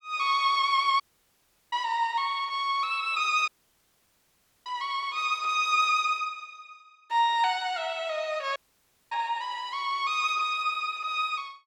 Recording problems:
audio cutting out; at 1 s for 0.5 s, at 3.5 s for 1 s and at 8.5 s for 0.5 s

